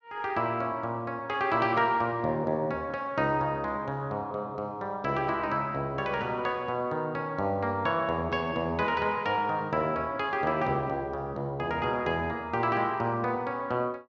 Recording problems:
none

